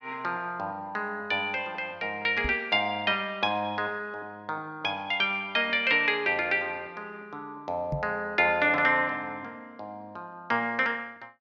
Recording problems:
microphone bump; at 2.5 s and at 8 s; peak -2 dB vs average level

